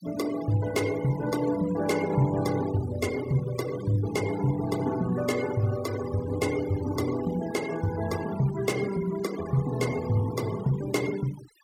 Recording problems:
denoising artefacts; signal-to-artefact ratio 14 dB

